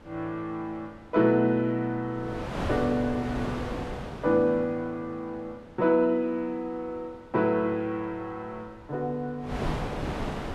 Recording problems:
wind noise; below 880 Hz, SNR 6 dB

